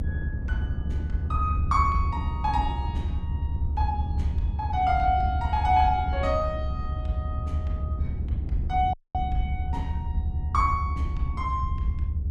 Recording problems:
rumble; below 80 Hz, strongest tone 68 Hz, SNR 1 dB
wind on the microphone; below 190 Hz, SNR 11 dB
audio cutting out; at 9 s

